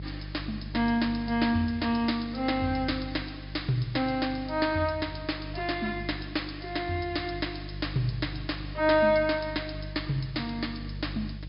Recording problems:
low-pass filter; nothing above 5.5 kHz
hum; 50 Hz, harmonics up to 450 Hz, SNR 12 dB
background hiss; SNR 27 dB

